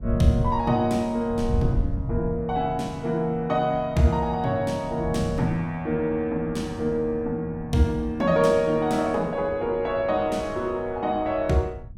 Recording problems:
wind noise; below 120 Hz, SNR 10 dB

